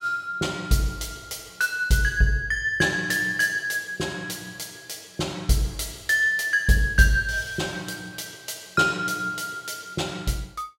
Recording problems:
none

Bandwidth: 16 kHz